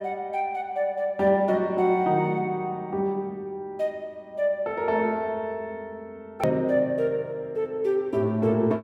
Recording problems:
click at an edit; at 6.5 s

